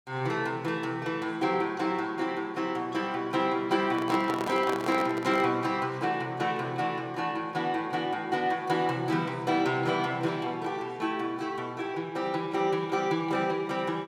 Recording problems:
microphone handling noise; from 4 to 5.5 s; peak -2 dB vs average level

